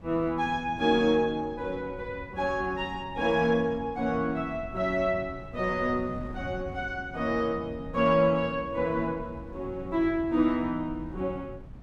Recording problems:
wind on the microphone; below 180 Hz, SNR 16 dB

